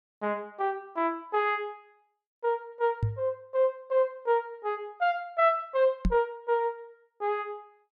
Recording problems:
microphone thump; at 3 s and at 6 s; peak +5 dB vs average level

